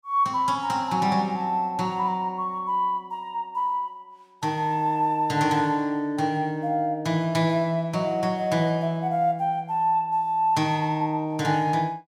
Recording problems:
none

